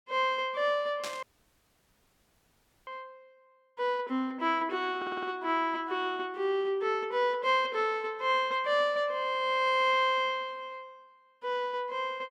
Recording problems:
burst of static; at 1 s; peak -5 dB vs average level
dropout; at 1 s for 1.5 s
audio stuttering; at 5 s

